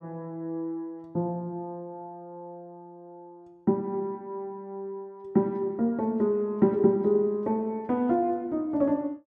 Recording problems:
none

